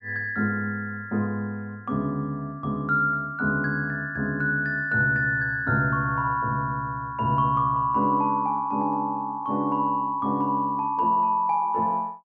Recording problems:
none

